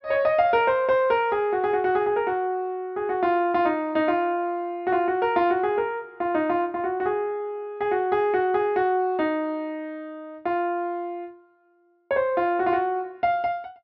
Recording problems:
treble cut off; nothing above 5.6 kHz

